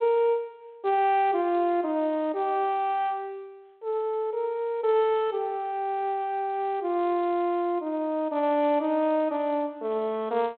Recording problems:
phone line; 240 Hz to 3.9 kHz, G.726

